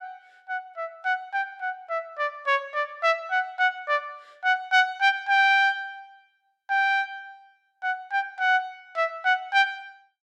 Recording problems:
none

